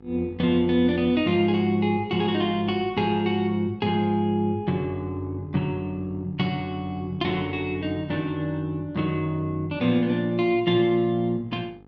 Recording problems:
mains hum; 50 Hz, harmonics up to 1.4 kHz, SNR 25 dB

